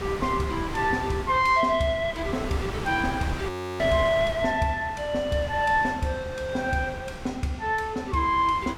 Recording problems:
wind on the microphone; below 1.1 kHz, SNR 11 dB
audio freezing; at 3.5 s

